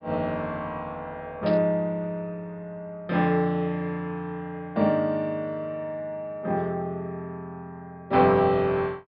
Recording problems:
treble missing; nothing above 5.5 kHz
static burst; at 1.5 s; peak -8 dB vs average level

